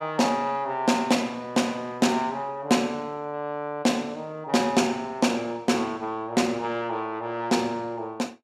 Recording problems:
none

